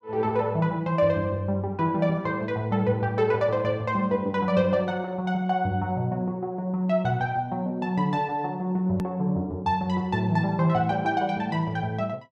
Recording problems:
hard cut with a click; at 9 s

